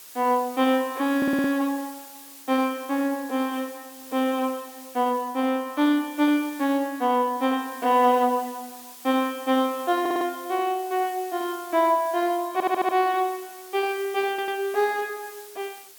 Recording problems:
background hiss; slope +1 dB per octave, SNR 18 dB
audio stuttering; 4 times, first at 1 s

